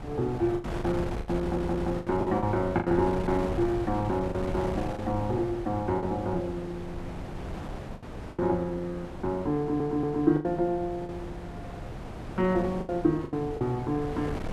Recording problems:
wind noise; below 560 Hz, SNR 9 dB
packet loss; 8% of the sound replaced, filled with the last packet
stutter; at 1.5 s and at 9.5 s

